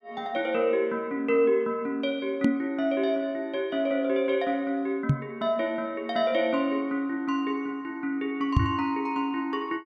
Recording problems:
knock on the microphone; at 2.5 s, at 5 s and at 8.5 s; peak +9 dB vs average level

